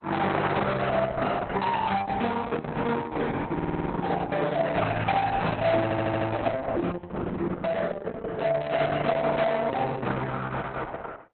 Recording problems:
codec artefacts; Opus, log-spectral distance 4 dB, nothing above 4 kHz
distorted audio; soft clipping, signal-to-distortion ratio 12 dB
stutter; at 3.5 s and at 6 s

